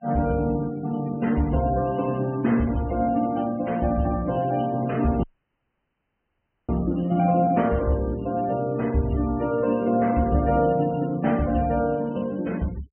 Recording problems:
treble missing; nothing above 3.1 kHz
noise reduction artefacts; signal-to-artefact ratio 23 dB
audio cutting out; at 5 s for 1.5 s

